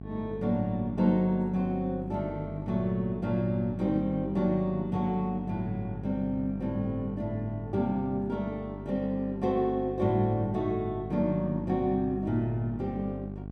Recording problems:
hum; 50 Hz, harmonics up to 800 Hz, SNR 10 dB

